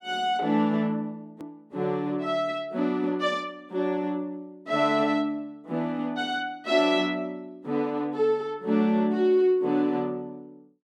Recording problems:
click at an edit; at 1.5 s

